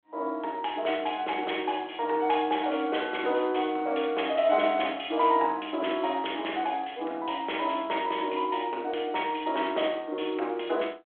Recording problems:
telephone audio; 280 Hz to 3.4 kHz, G.726

